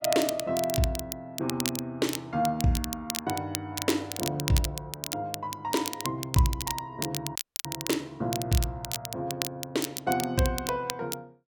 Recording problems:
crackling; vinyl, SNR 5 dB
audio cutting out; at 7.5 s

